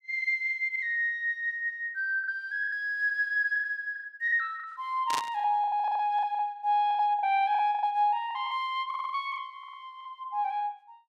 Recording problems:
packet loss; 12% of the sound replaced, filled with the last packet
static burst; at 5 s; peak 0 dB vs average level
stutter; at 6 s, at 9 s and at 9.5 s

